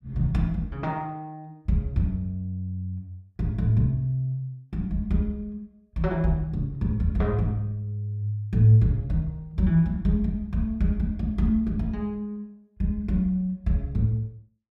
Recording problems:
none

